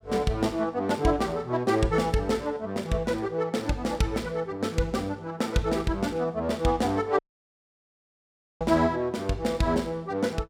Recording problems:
audio cutting out; at 7 s for 1.5 s

